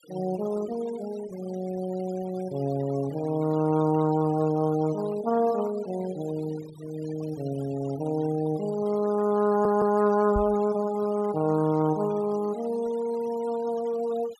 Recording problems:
noise reduction artefacts; signal-to-artefact ratio 20 dB
stutter; at 9.5 s
microphone bump; at 10 s; peak -1 dB vs average level

